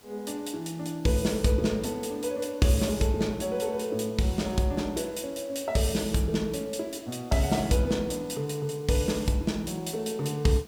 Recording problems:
hiss; slope -2 dB per octave, SNR 25 dB

